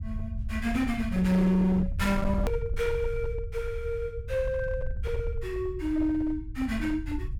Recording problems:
distorted audio; hard clipping, uneven, signal-to-distortion ratio 11 dB
rumble; below 84 Hz, SNR 7 dB
hard cut with a click; at 2.5 s

